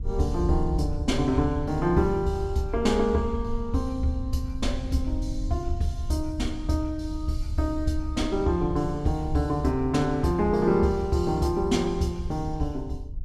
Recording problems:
rumble; below 78 Hz, SNR 9 dB

